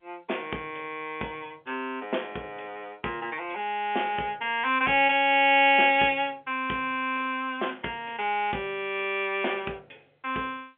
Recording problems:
telephone audio; 240 Hz to 3.4 kHz, G.711

